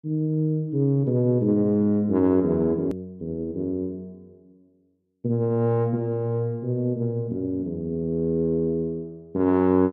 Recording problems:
hard cut with a click; at 3 s

